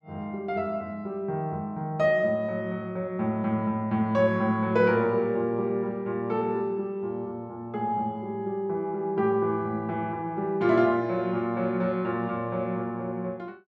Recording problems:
none

